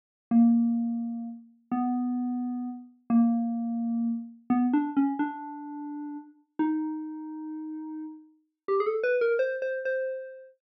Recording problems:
none

